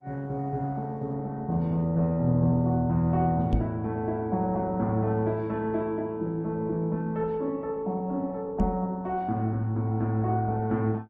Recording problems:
lossy compression; Opus, then Opus, log-spectral distance 2 dB
knock on the microphone; at 3.5 s and at 8.5 s; peak +4 dB vs average level

